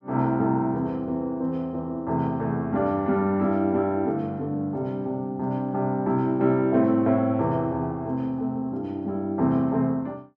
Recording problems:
none

